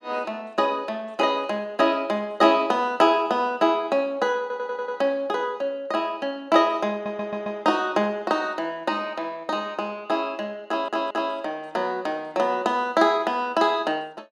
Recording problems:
stutter; at 4.5 s, at 7 s and at 11 s

